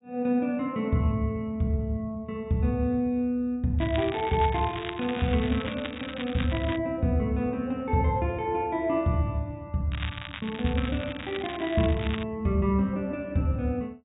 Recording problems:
treble missing; nothing above 4 kHz
crackling; from 4 to 7 s and from 10 to 12 s; loose cable, SNR 11 dB

